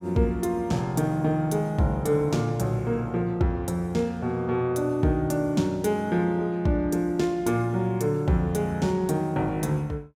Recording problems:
none

